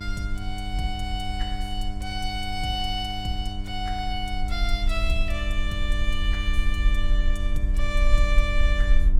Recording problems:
hum; 50 Hz, harmonics up to 1.1 kHz, SNR 6 dB
low-frequency rumble; below 46 Hz, SNR -2 dB

